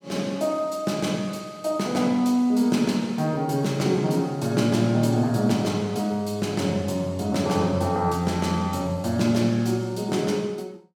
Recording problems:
none

